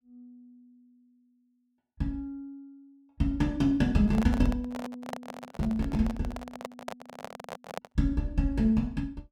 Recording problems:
handling noise; from 4 to 8 s; peak -3 dB vs average level

